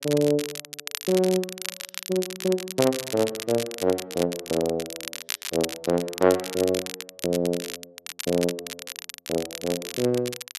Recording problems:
crackling; vinyl, SNR 8 dB

